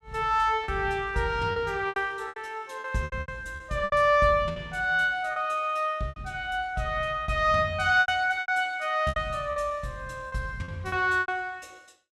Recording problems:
lost packets; 11% of the sound replaced, filled with repeated pitch periods

